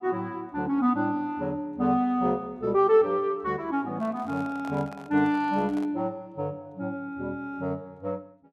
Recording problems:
microphone handling noise; from 4 to 6 s; peak -11 dB vs average level

